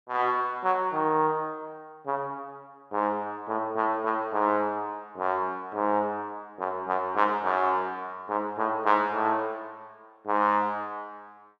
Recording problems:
none

